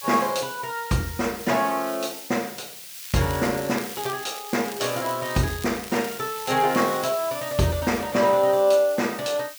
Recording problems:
background hiss; slope +5 dB per octave, SNR 13 dB
crackle; from 3 to 7 s; loose cable, SNR 16 dB

